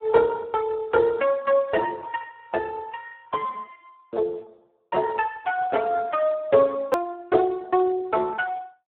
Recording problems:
phone line; 320 Hz to 2.1 kHz, Speex
hard cut with a click; at 7 s

